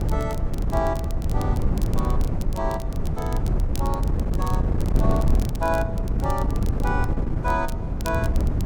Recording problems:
wind noise; below 140 Hz, SNR -5 dB
crackling; vinyl, SNR 14 dB

